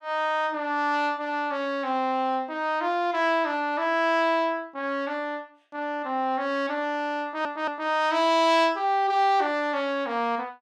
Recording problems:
stutter; at 7 s

